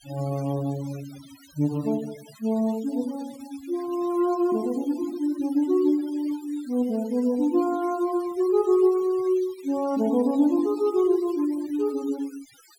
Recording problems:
noise reduction artefacts; signal-to-artefact ratio 22 dB

